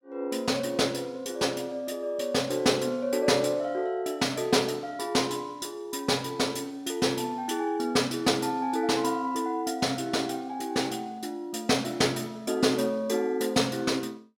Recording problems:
none

